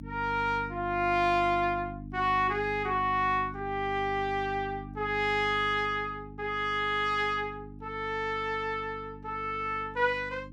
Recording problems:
hum; 50 Hz, harmonics up to 300 Hz, SNR 14 dB

